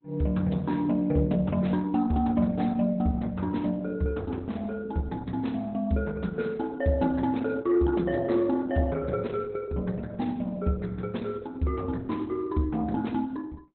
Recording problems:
lossy compression; Opus, log-spectral distance 3 dB, nothing above 4 kHz

